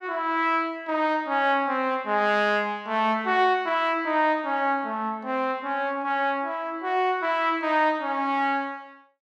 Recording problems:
none

